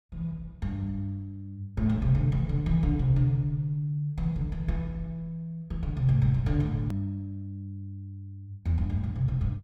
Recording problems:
click at an edit; at 7 s

